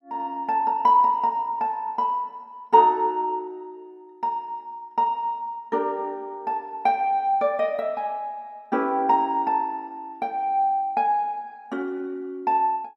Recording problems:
none

